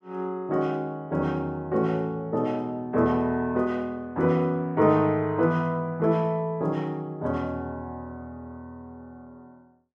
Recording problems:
none

